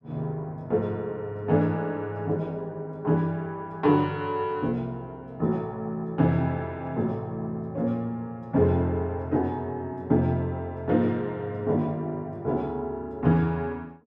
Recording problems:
none

